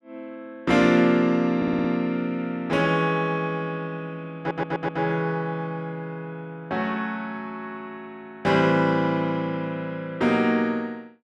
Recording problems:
stutter; at 1.5 s and at 4.5 s

